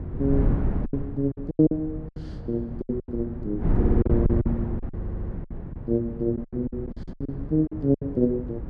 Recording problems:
wind on the microphone; below 180 Hz, SNR 3 dB
lost packets; 14% of the sound replaced, filled with silence
stutter; at 4 s and at 5 s

